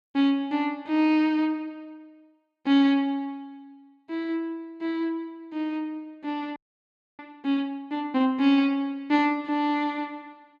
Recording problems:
audio freezing; at 6.5 s for 0.5 s

